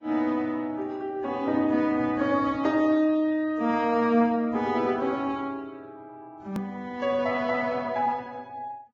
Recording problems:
codec artefacts; Vorbis, log-spectral distance 2 dB, nothing above 18.9 kHz
edit click; at 6.5 s

